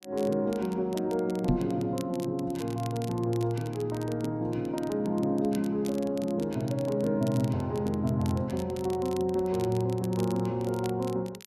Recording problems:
crackling; vinyl, SNR 20 dB
microphone bump; at 1.5 s; peak +7 dB vs average level

